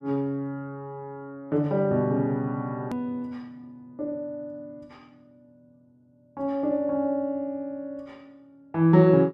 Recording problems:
edit click; at 3 s

